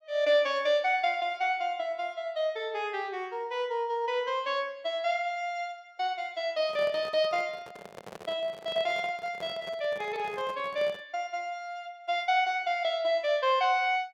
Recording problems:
handling noise; from 6.5 to 11 s; peak -10 dB vs average level

